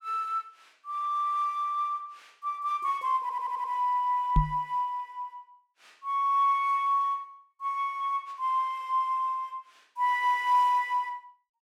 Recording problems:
stutter; at 3 s
microphone thump; at 4.5 s; peak +6 dB vs average level

